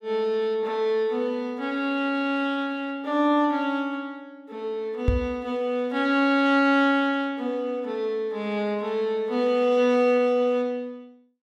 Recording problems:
microphone bump; at 5 s; peak +5 dB vs average level

